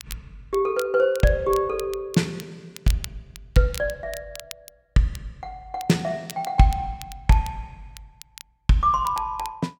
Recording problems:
crackle; vinyl, SNR 18 dB

